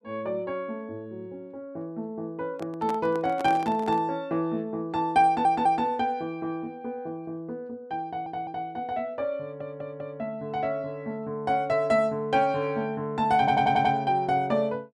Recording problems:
handling noise; from 2.5 to 4 s; peak -5 dB vs average level
stutter; 4 times, first at 5.5 s

